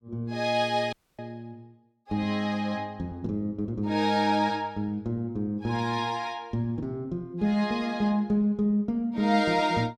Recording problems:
audio cutting out; at 1 s

